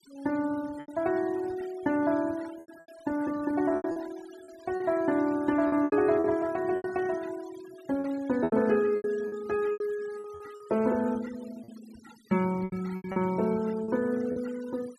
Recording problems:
denoising artefacts; signal-to-artefact ratio 22 dB
packet loss; 10% of the sound replaced, filled with repeated pitch periods

